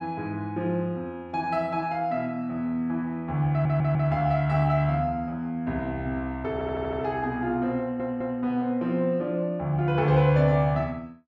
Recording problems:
stutter; at 3.5 s, at 6.5 s and at 8 s

